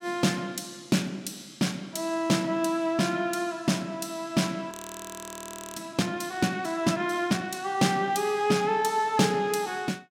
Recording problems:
audio freezing; at 4.5 s for 1 s

